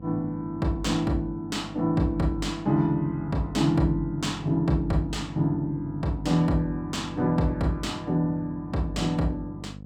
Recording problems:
mains hum; 50 Hz, harmonics up to 750 Hz, SNR 14 dB

